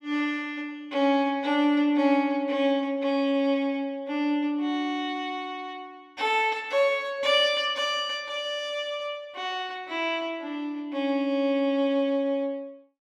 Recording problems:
none

